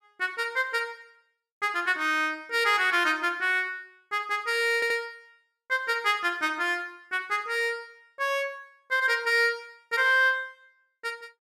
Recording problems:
audio stuttering; at 4.5 s

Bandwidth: 14.5 kHz